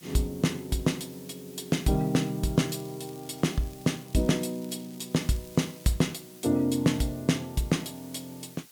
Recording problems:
background hiss; slope +1 dB per octave, SNR 21 dB
crackling; from 2.5 to 6 s; loose cable, SNR 25 dB

